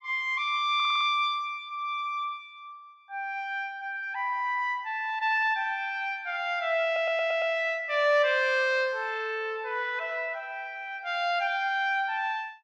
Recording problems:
audio stuttering; at 1 s and at 7 s

